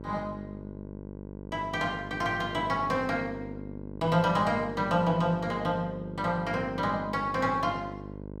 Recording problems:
electrical hum; 50 Hz, harmonics up to 1.1 kHz, SNR 12 dB

